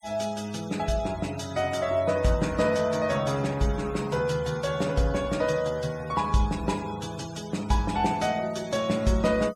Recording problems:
denoising artefacts; signal-to-artefact ratio 19 dB

